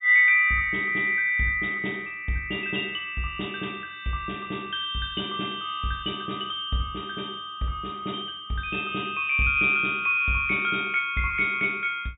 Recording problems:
low-pass filter; nothing above 3.8 kHz

